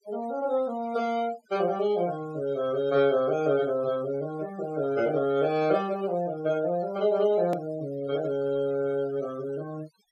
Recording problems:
noise reduction artefacts; signal-to-artefact ratio 20 dB
click at an edit; at 7.5 s

